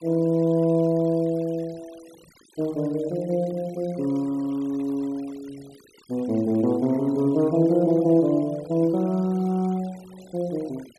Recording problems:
noise reduction artefacts; signal-to-artefact ratio 26 dB

